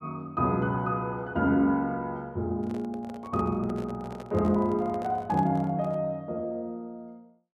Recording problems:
handling noise; from 2.5 to 6 s; peak -10 dB vs average level

